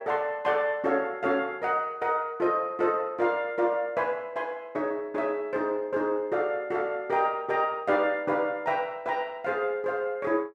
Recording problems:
none

